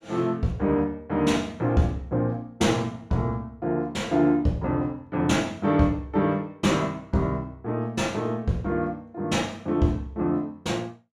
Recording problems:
none

